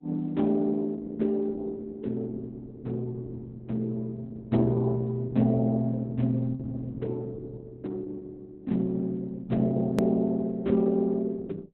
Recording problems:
lossy codec; Opus, log-spectral distance 2 dB, nothing above 13.1 kHz
edit click; at 10 s

